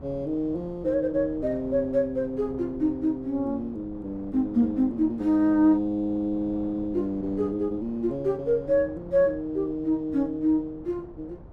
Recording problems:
wind noise; below 400 Hz, SNR 19 dB

